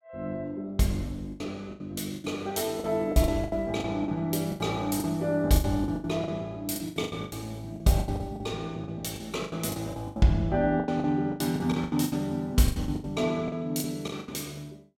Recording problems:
packet loss; 17% of the sound replaced, filled with the last packet

